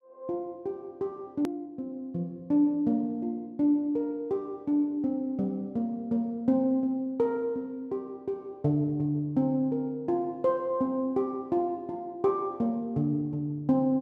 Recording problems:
hard cut with a click; at 1.5 s

